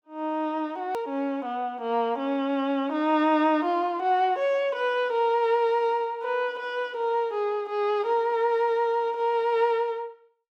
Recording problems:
hard cut with a click; at 1 s

